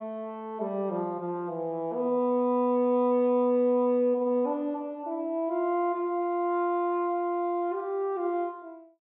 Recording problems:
low-pass filter; nothing above 4 kHz

